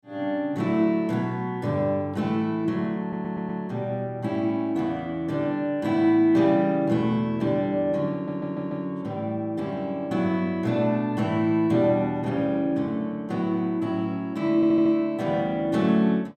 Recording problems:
audio stuttering; at 3 s, at 8 s and at 15 s

